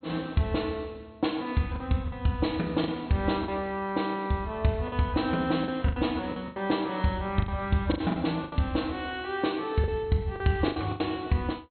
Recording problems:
treble missing; nothing above 4.2 kHz
packet loss; 8% of the sound replaced, filled with the last packet

